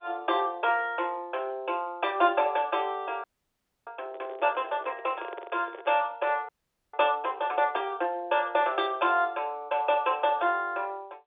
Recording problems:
phone line; 300 Hz to 3.6 kHz, G.711
frozen audio; at 3 s for 0.5 s and at 6.5 s
microphone handling noise; from 4 to 6 s; peak -8 dB vs average level

